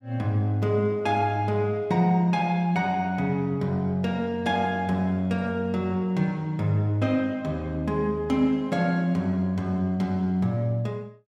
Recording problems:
none

